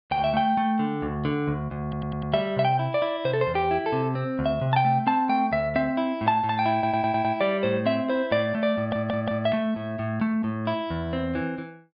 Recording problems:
low-pass filter; nothing above 5.5 kHz
audio stuttering; at 2 s, at 6.5 s and at 9 s

